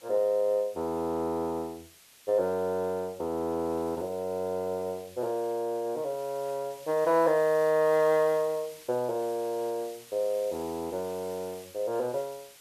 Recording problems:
background hiss; slope +1 dB per octave, SNR 21 dB

